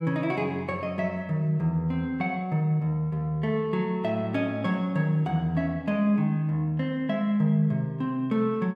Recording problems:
none

